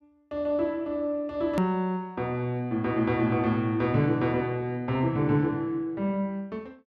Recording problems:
click at an edit; at 1.5 s

